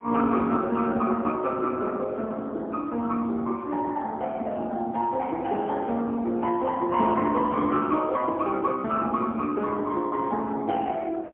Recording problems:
phone line; 170 Hz to 3.4 kHz, AMR-NB, then MP3

